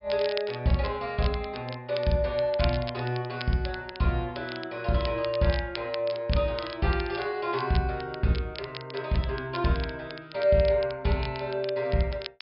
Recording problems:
treble missing; nothing above 5.5 kHz
crackle; vinyl, SNR 14 dB

